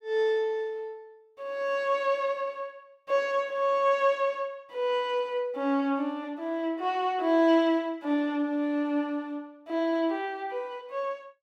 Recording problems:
none

